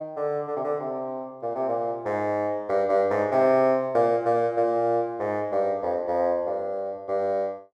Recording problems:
none

